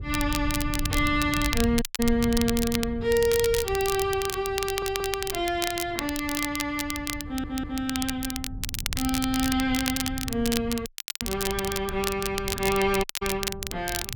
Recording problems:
wind noise; below 110 Hz, SNR 10 dB
crackling; vinyl, SNR 5 dB
dropout; at 2 s, at 11 s and at 13 s
stutter; at 4.5 s and at 7 s

